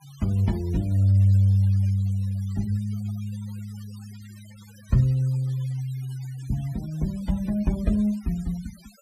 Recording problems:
noise reduction artefacts; signal-to-artefact ratio 25 dB

